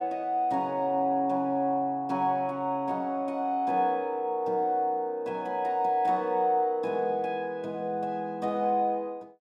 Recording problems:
none

